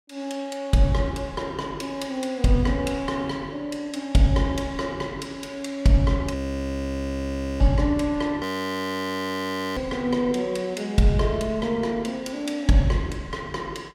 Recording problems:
frozen audio; at 6.5 s for 1.5 s and at 8.5 s for 1.5 s

